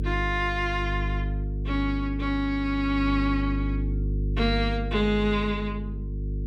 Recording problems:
hum; 50 Hz, harmonics up to 450 Hz, SNR 3 dB

